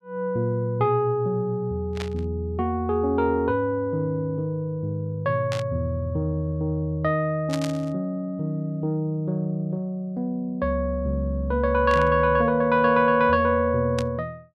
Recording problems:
static burst; 5 times, first at 2 s; peak -5 dB vs average level

